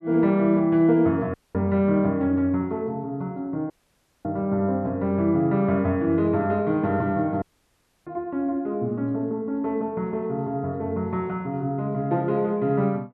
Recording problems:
dropout; at 1.5 s, at 3.5 s for 0.5 s and at 7.5 s for 0.5 s

